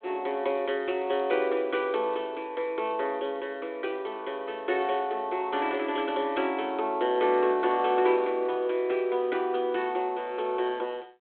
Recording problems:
phone line; 240 Hz to 3.4 kHz, G.726

